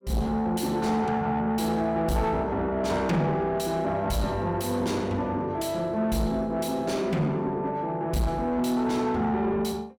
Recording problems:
distorted audio; soft clipping, signal-to-distortion ratio 10 dB

